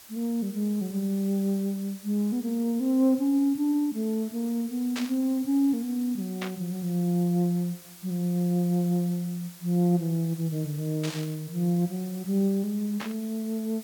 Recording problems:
background hiss; slope +1 dB per octave, SNR 18 dB
static burst; 4 times, first at 5 s; peak -3 dB vs average level

